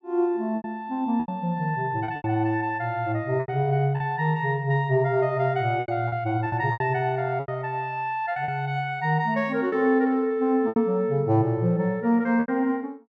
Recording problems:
packet loss; 8% of the sound replaced, filled with repeated pitch periods

